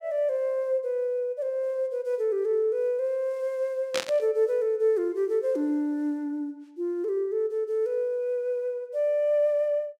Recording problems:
static burst; at 4 s; peak +2 dB vs average level

